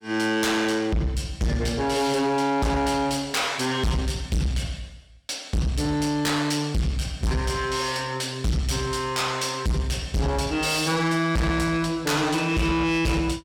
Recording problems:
distorted audio; soft clipping, signal-to-distortion ratio 6 dB

